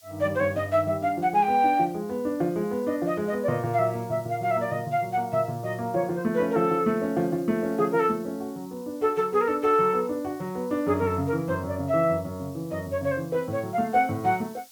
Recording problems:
background hiss; slope +3 dB per octave, SNR 25 dB

